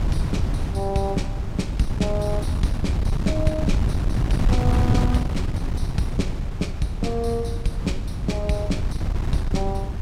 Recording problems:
wind noise; below 130 Hz, SNR -2 dB

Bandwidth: 16 kHz